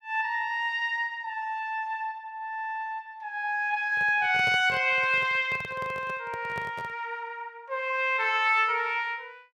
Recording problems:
microphone handling noise; from 4 to 7 s; peak -8 dB vs average level

